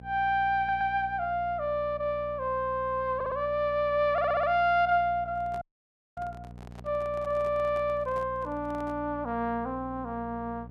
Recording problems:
mains hum; 60 Hz, harmonics up to 780 Hz, SNR 17 dB
audio stuttering; at 0.5 s, at 3 s and at 4 s
handling noise; from 5.5 to 9 s; peak -14 dB vs average level
audio cutting out; at 5.5 s for 0.5 s

